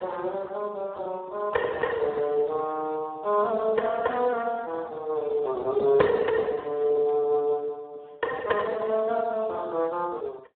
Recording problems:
telephone audio; 300 Hz to 2.5 kHz, Speex

